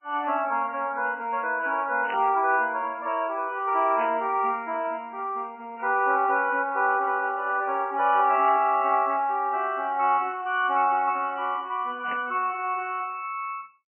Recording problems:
lossy codec; MP3, log-spectral distance 3 dB, nothing above 2.4 kHz
burst of static; 4 times, first at 2 s; peak -4 dB vs average level

